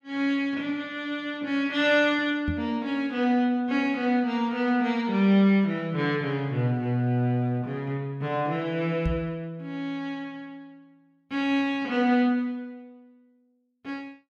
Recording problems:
microphone bump; at 2.5 s and at 9 s; peak -1 dB vs average level

